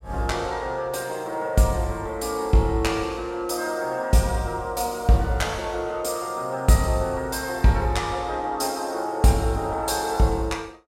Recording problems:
none

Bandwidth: 16 kHz